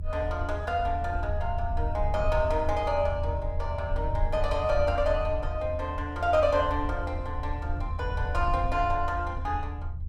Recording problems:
low-frequency rumble; below 80 Hz, SNR 4 dB

